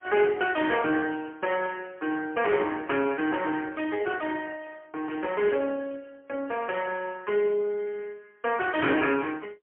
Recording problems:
phone line; 240 Hz to 2.3 kHz, AMR-NB, then MP3
static burst; at 5 s; peak -18 dB vs average level

